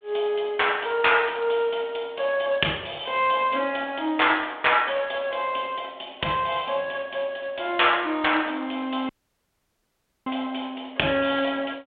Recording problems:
phone line; 190 Hz to 3.5 kHz, G.726
audio cutting out; at 9 s for 1 s

